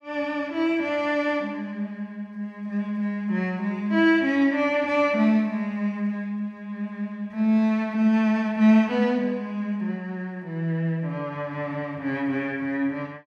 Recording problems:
none

